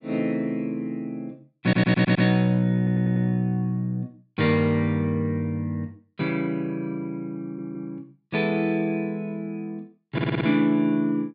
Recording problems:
low-pass filter; nothing above 5.1 kHz
stutter; 4 times, first at 1.5 s

